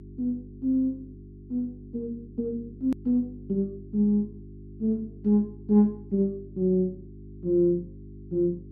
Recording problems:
electrical hum; 50 Hz, harmonics up to 400 Hz, SNR 18 dB
hard cut with a click; at 3 s

